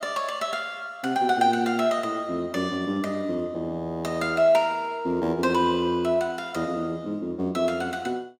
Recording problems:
none

